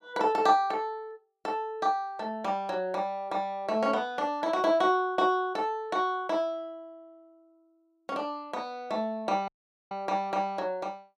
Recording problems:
dropout; at 9.5 s

